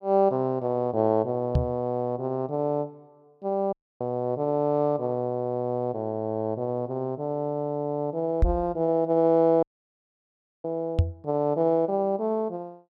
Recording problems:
microphone thump; at 1.5 s, at 8.5 s and at 11 s; peak +8 dB vs average level
dropout; at 3.5 s and at 9.5 s for 1 s

